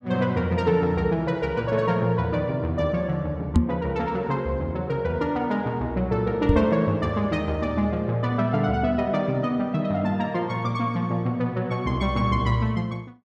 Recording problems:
microphone thump; at 3.5 s and at 6.5 s; peak +9 dB vs average level

